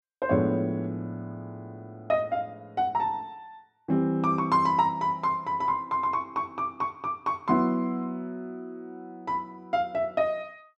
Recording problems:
none

